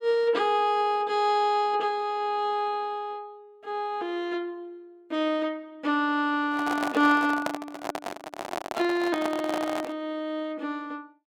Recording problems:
microphone handling noise; from 6.5 to 10 s; peak +1 dB vs average level

